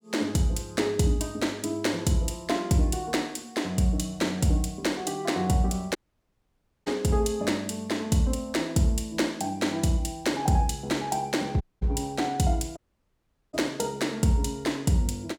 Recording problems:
dropout; at 6 s for 1 s, at 12 s and at 13 s for 1 s

